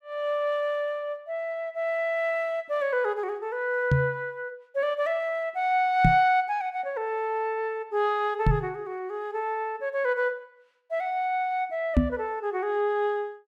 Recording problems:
microphone thump; 4 times, first at 4 s; peak +9 dB vs average level

